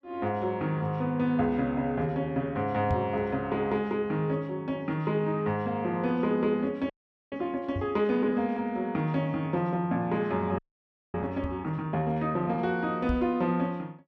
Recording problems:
knock on the microphone; 4 times, first at 3 s; peak +1 dB vs average level
frozen audio; at 7 s and at 11 s for 0.5 s

